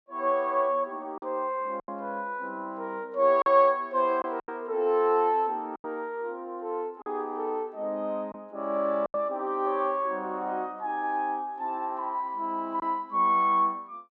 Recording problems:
lost packets; 4% of the sound replaced, filled with silence

